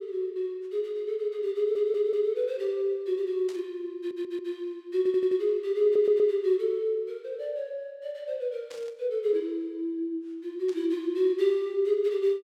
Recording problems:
audio stuttering; 4 times, first at 1.5 s
static burst; at 3.5 s, at 8.5 s and at 11 s; peak -14 dB vs average level

